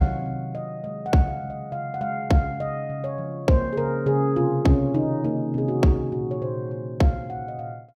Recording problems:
none

